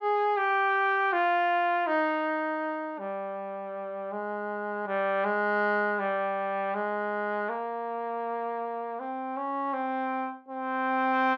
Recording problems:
none

